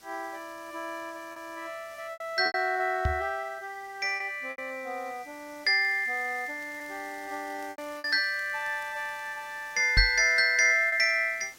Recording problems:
hiss; slope -1 dB per octave, SNR 25 dB
packet loss; 5% of the sound replaced, filled with repeated pitch periods
microphone bump; at 3 s and at 10 s; peak +4 dB vs average level
crackle; at 6 s and from 6.5 to 9.5 s; loose cable, SNR 29 dB

